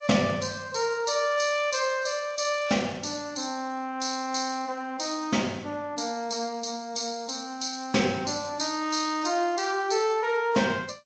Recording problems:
codec artefacts; MP3, then G.722, log-spectral distance 8 dB

